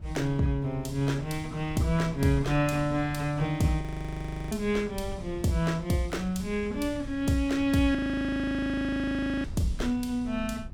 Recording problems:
wind on the microphone; below 110 Hz, SNR 14 dB
audio freezing; at 4 s for 0.5 s and at 8 s for 1.5 s

